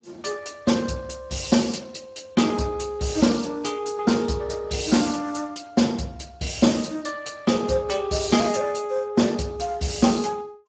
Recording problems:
codec artefacts; Speex, log-spectral distance 6 dB, nothing above 7.6 kHz

